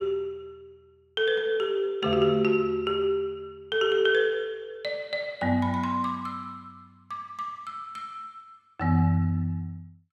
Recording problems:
none

